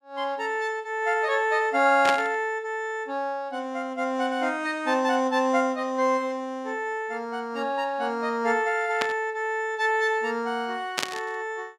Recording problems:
burst of static; at 2 s, at 9 s and at 11 s; peak +4 dB vs average level

